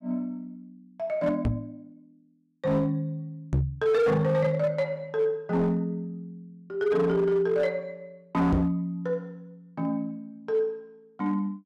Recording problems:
distortion; hard clipping, signal-to-distortion ratio 11 dB
microphone bump; at 1.5 s, at 3.5 s and at 8.5 s; peak +5 dB vs average level

